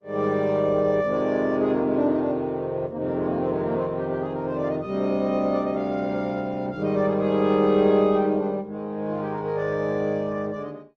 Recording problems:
codec artefacts; Opus, log-spectral distance 2 dB

